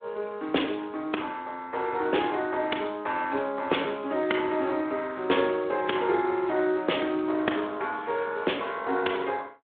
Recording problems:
phone line; 240 Hz to 3.5 kHz, Speex

